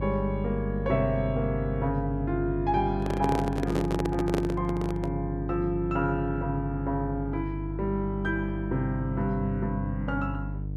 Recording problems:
hum; 50 Hz, harmonics up to 450 Hz, SNR 5 dB
handling noise; from 3 to 5 s; peak +3 dB vs average level

